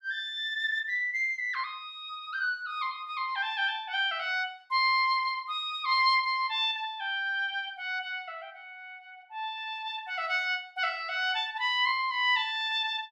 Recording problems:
none

